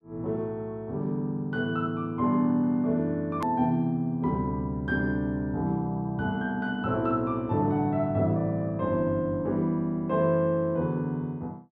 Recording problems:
hard cut with a click; at 3.5 s

